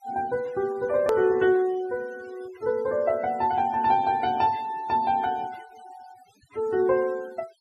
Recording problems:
noise reduction artefacts; signal-to-artefact ratio 23 dB
hard cut with a click; at 1 s

